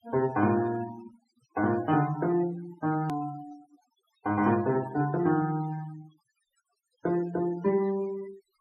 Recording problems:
denoising artefacts; signal-to-artefact ratio 18 dB
hard cut with a click; at 3 s

